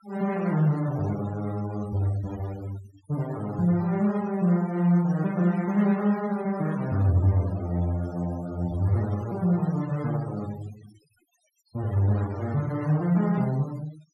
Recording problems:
noise reduction artefacts; signal-to-artefact ratio 19 dB

